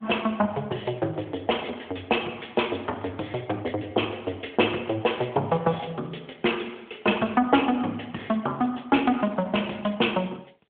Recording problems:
telephone audio; 260 Hz to 3.4 kHz, AMR-NB

